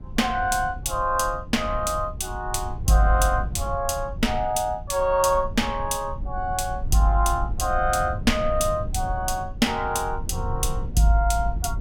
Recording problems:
low-frequency rumble; below 86 Hz, SNR 9 dB

